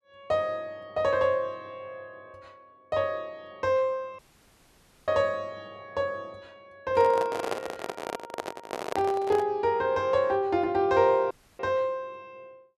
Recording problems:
audio cutting out; at 4 s for 1 s and at 11 s
microphone handling noise; from 7 to 9.5 s; peak +1 dB vs average level

